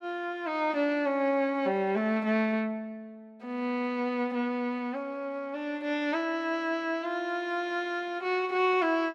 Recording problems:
none

